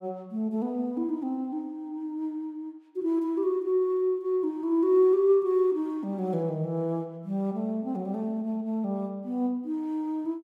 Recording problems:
none

